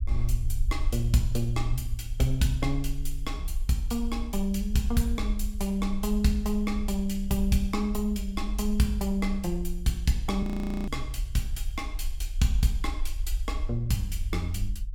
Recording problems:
low-frequency rumble; below 52 Hz, SNR 5 dB
audio freezing; at 10 s

